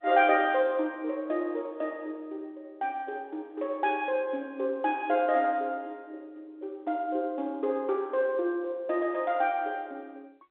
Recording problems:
telephone audio; 260 Hz to 3.9 kHz, G.711

